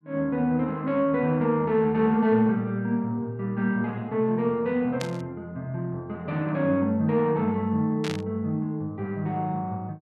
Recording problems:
static burst; at 5 s and at 8 s; peak -4 dB vs average level

